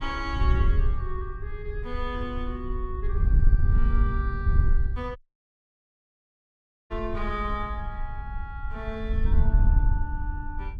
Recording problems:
wind noise; below 66 Hz, SNR -7 dB
audio cutting out; at 5 s for 1.5 s

